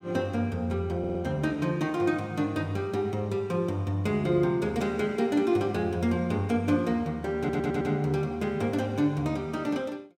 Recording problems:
stutter; at 1 s and at 7.5 s

